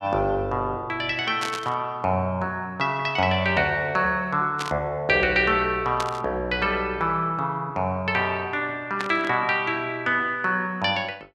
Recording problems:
burst of static; 4 times, first at 1.5 s; peak -2 dB vs average level

